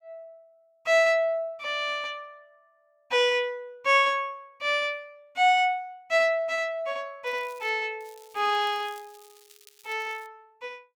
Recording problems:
crackle; at 7.5 s and from 8 to 10 s; loose cable, SNR 27 dB

